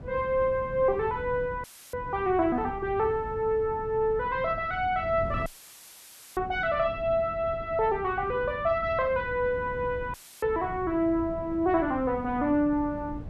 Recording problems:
wind on the microphone; below 210 Hz, SNR 14 dB
audio cutting out; at 1.5 s, at 5.5 s for 1 s and at 10 s; filled with static

